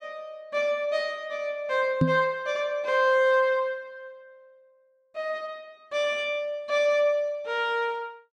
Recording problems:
microphone bump; at 2 s; peak +7 dB vs average level

